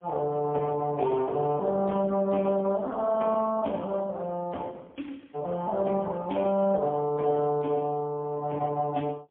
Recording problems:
telephone audio; 150 Hz to 3.4 kHz, AMR-NB, then MP3

